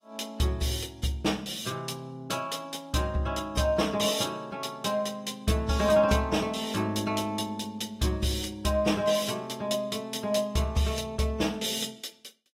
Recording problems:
lossy compression; AAC, log-spectral distance 4 dB, nothing above 15.5 kHz

